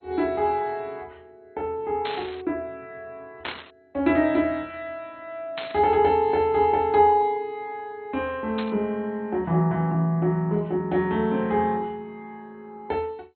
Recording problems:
lossy compression; MP2, log-spectral distance 2 dB, nothing above 3.9 kHz
static burst; 4 times, first at 2 s; peak -3 dB vs average level

